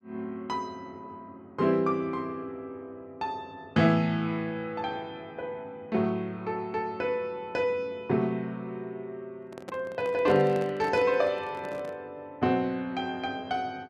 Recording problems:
handling noise; from 9.5 to 12 s; peak -6 dB vs average level

